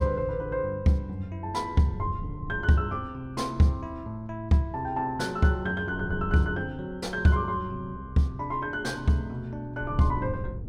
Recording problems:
wind noise; below 140 Hz, SNR 15 dB

